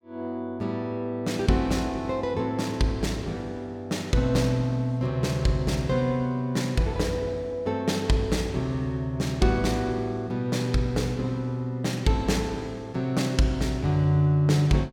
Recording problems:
none

